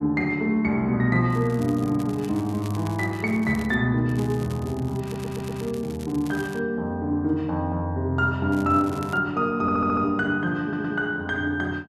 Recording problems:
crackle; from 1.5 to 3.5 s, from 4 to 6.5 s and at 8.5 s; loose cable, SNR 21 dB
stutter; at 5 s, at 9.5 s and at 11 s

